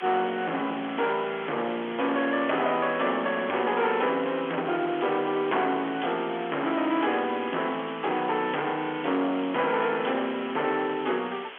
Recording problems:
phone line; 240 Hz to 3.4 kHz, G.711
distorted audio; hard clipping, uneven, signal-to-distortion ratio 8 dB
hiss; SNR 14 dB

